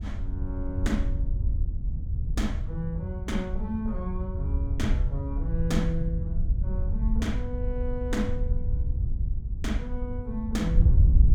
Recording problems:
wind on the microphone; below 80 Hz, SNR -4 dB

